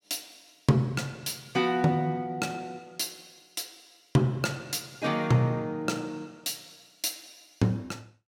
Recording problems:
none

